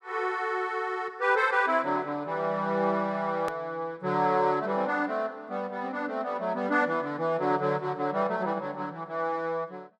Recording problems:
hard cut with a click; at 3.5 s

